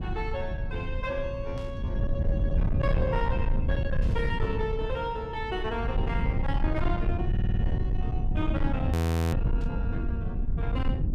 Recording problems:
distorted audio; soft clipping, signal-to-distortion ratio 11 dB
low-frequency rumble; below 110 Hz, SNR -4 dB
static burst; at 1.5 s, at 4 s and at 9.5 s; peak -12 dB vs average level
stutter; at 7.5 s
frozen audio; at 9 s

